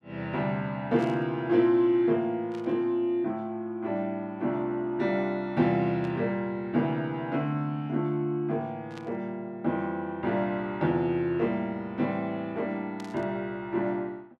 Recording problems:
burst of static; 5 times, first at 1 s; peak -13 dB vs average level

